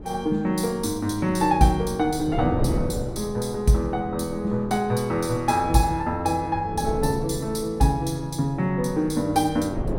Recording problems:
wind on the microphone; below 340 Hz, SNR 11 dB

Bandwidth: 16.5 kHz